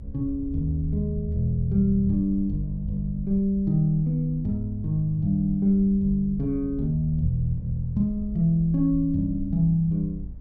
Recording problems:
low-frequency rumble; below 70 Hz, SNR 14 dB

